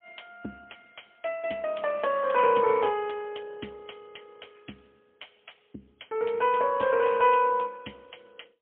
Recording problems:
phone line; 220 Hz to 3.3 kHz, AMR-NB, then MP3

